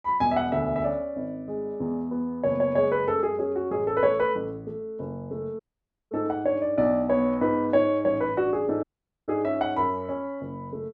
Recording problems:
dropout; at 5.5 s for 0.5 s and at 9 s

